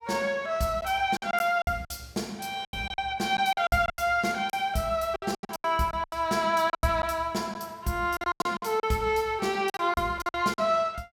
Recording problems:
lost packets; 14% of the sound replaced, filled with silence

